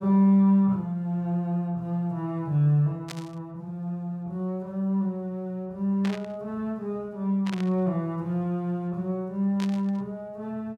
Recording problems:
burst of static; 4 times, first at 3 s; peak -6 dB vs average level

